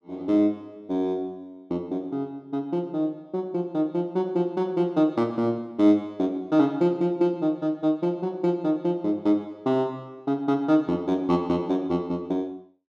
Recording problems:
none

